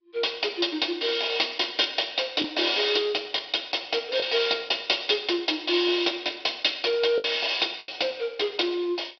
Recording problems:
low-pass filter; nothing above 5.2 kHz
codec artefacts; MP2, log-spectral distance 9 dB
packet loss; 3% of the sound replaced, filled with the last packet

